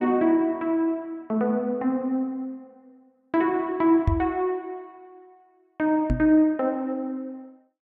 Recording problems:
microphone bump; at 4 s and at 6 s; peak +5 dB vs average level

